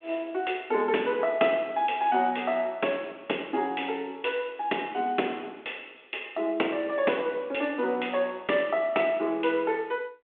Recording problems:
phone line; 240 Hz to 3.5 kHz, G.726

